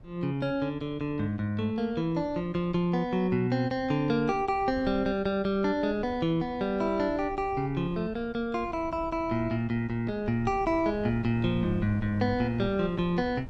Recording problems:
wind on the microphone; below 190 Hz, SNR 18 dB

